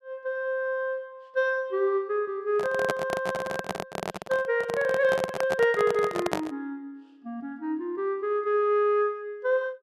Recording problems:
handling noise; from 2.5 to 6.5 s; peak +3 dB vs average level

